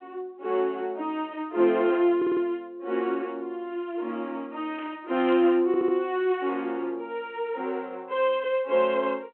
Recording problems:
telephone audio; 240 Hz to 3.3 kHz, G.726
stutter; at 2 s and at 5.5 s
static burst; at 5 s; peak -15 dB vs average level

